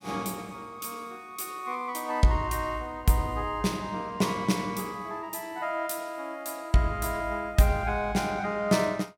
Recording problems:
none

